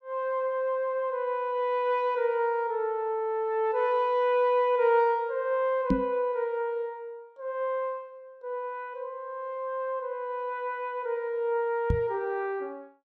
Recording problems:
knock on the microphone; at 6 s and at 12 s; peak +7 dB vs average level

